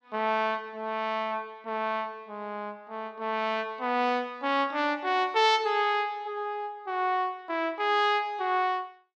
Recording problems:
none

